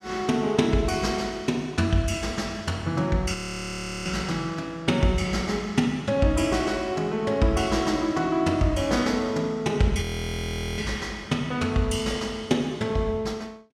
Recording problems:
frozen audio; at 3.5 s for 0.5 s and at 10 s for 1 s

